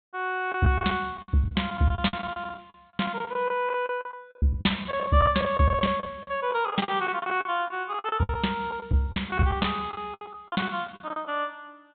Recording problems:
treble missing; nothing above 4 kHz
lost packets; 16% of the sound replaced, filled with the last packet

